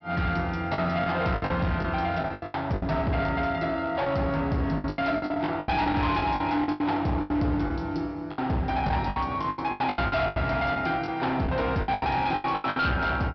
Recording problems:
treble missing; nothing above 5.5 kHz
distorted audio; hard clipping, signal-to-distortion ratio 10 dB
lost packets; 15% of the sound replaced, filled with the last packet

